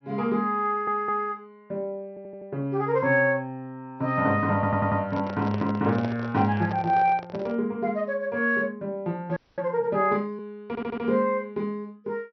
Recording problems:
low-pass filter; nothing above 5.9 kHz
stutter; 4 times, first at 0.5 s
handling noise; from 5 to 7.5 s; peak -4 dB vs average level
frozen audio; at 9.5 s

